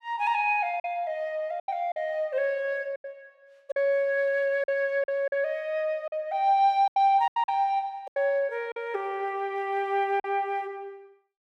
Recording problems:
lost packets; 8% of the sound replaced, filled with silence

